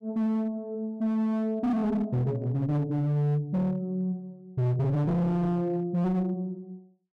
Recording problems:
distortion; hard clipping, signal-to-distortion ratio 8 dB

